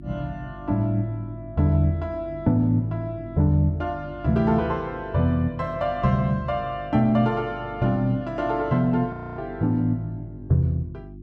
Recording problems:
hum; 50 Hz, harmonics up to 350 Hz, SNR 17 dB
frozen audio; at 9 s

